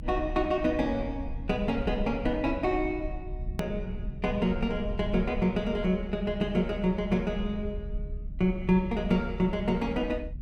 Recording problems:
low-frequency rumble; below 70 Hz, strongest tone 36 Hz, SNR 10 dB
edit click; at 3.5 s

